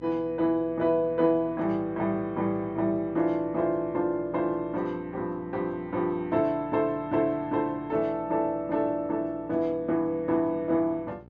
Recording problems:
treble cut off; nothing above 8 kHz
electrical hum; 60 Hz, harmonics up to 1.3 kHz, SNR 23 dB

